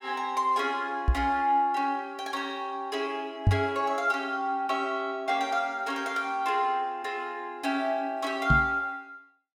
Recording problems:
microphone bump; at 1 s, at 3.5 s and at 8.5 s; peak +9 dB vs average level

